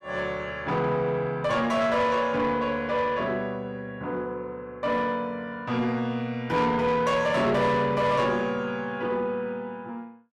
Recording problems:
distortion; soft clipping, signal-to-distortion ratio 11 dB

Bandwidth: 14 kHz